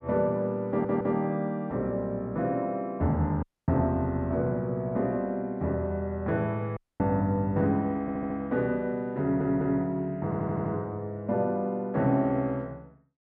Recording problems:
audio stuttering; 4 times, first at 0.5 s
audio cutting out; at 3.5 s and at 7 s

